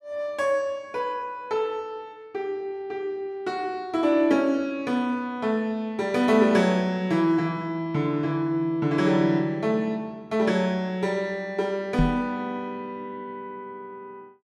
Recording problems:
knock on the microphone; at 12 s; peak +5 dB vs average level

